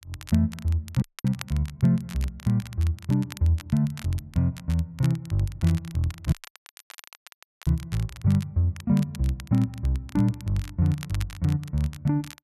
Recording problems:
crackle; vinyl, SNR 19 dB
dropout; at 1 s and at 6.5 s for 1.5 s

